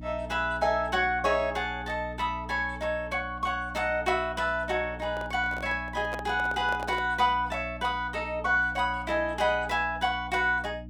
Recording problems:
electrical hum; 60 Hz, harmonics up to 300 Hz, SNR 15 dB
handling noise; from 5 to 7 s; peak -4 dB vs average level

